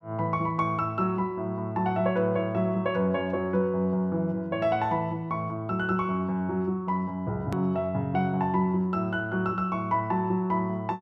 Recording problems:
hard cut with a click; at 7.5 s

